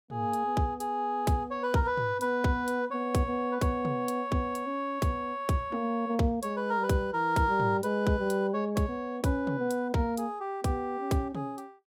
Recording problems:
none

